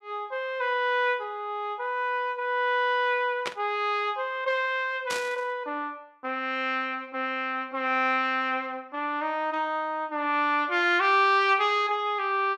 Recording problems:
burst of static; at 3.5 s and at 5 s; peak 0 dB vs average level

